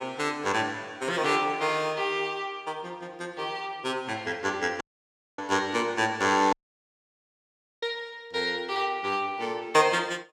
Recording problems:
dropout; at 5 s for 0.5 s and at 6.5 s for 1.5 s

